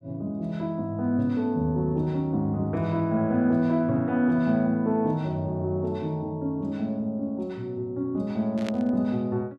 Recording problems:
static burst; at 8.5 s; peak -6 dB vs average level

